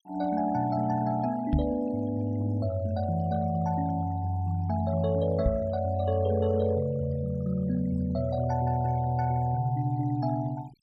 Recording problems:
noise reduction artefacts; signal-to-artefact ratio 22 dB
microphone thump; at 1.5 s and at 5.5 s; peak +5 dB vs average level

